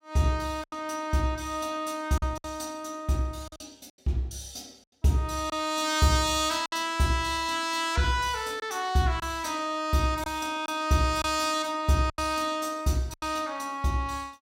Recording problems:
lost packets; 4% of the sound replaced, filled with silence

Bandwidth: 16.5 kHz